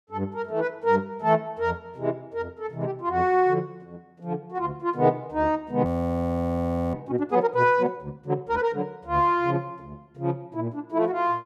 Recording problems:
frozen audio; at 6 s for 1 s

